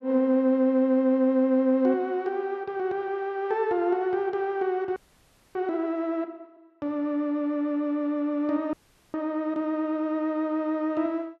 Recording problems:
frozen audio; at 5 s for 0.5 s and at 8.5 s

